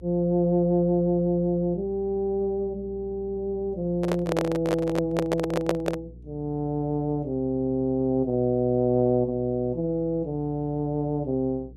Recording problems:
electrical hum; 60 Hz, harmonics up to 480 Hz, SNR 20 dB
handling noise; from 4 to 6 s; peak +4 dB vs average level

